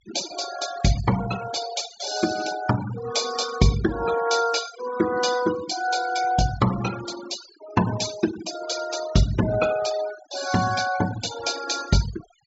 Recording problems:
low-pass filter; nothing above 8 kHz
denoising artefacts; signal-to-artefact ratio 11 dB

